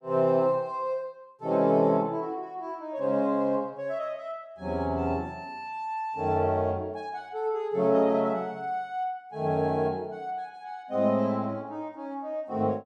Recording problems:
none

